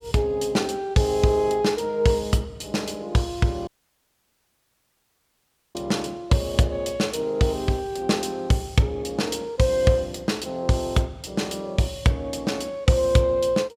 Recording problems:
audio cutting out; at 3.5 s for 2 s

